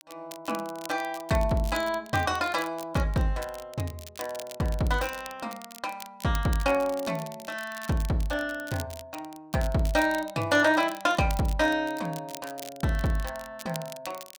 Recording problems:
crackle; vinyl, SNR 16 dB

